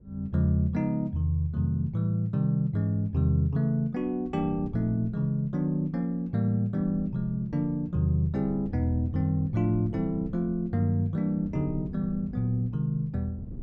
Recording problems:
wind on the microphone; below 180 Hz, SNR 17 dB

